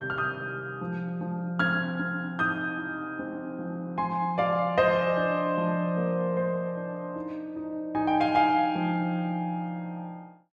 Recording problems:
none

